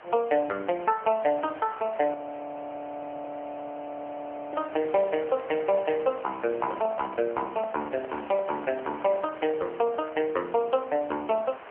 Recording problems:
telephone audio; 320 Hz to 3.1 kHz, AMR-NB
background hiss; SNR 16 dB
frozen audio; at 2 s for 2.5 s
handling noise; from 6.5 to 10 s; peak -6 dB vs average level

